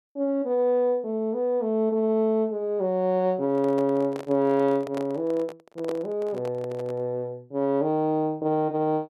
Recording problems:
handling noise; from 3.5 to 7 s; peak -5 dB vs average level

